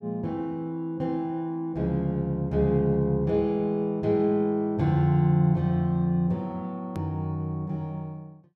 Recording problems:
click at an edit; at 7 s

